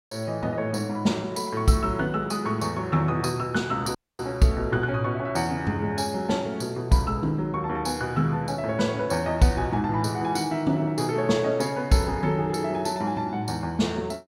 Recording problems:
dropout; at 4 s

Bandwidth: 16.5 kHz